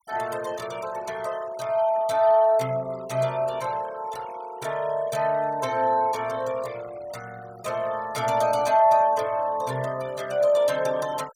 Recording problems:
noise reduction artefacts; signal-to-artefact ratio 21 dB

